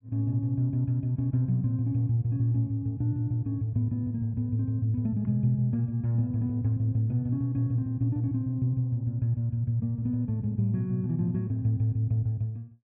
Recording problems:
none

